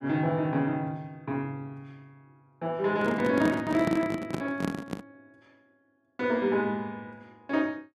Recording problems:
handling noise; from 3 to 5 s; peak +3 dB vs average level

